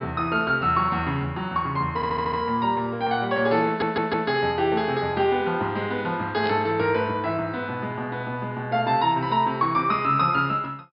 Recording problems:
treble missing; nothing above 5.5 kHz
audio stuttering; at 2 s and at 3.5 s
static burst; at 6.5 s; peak -8 dB vs average level

